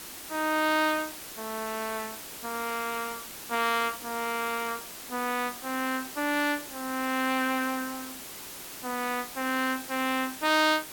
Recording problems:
background hiss; slope -1 dB per octave, SNR 10 dB

